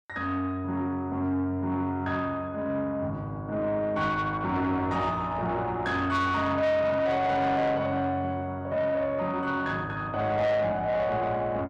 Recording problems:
distorted audio; soft clipping, signal-to-distortion ratio 11 dB

